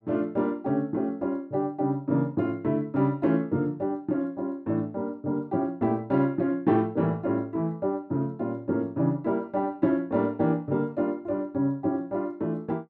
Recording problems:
none

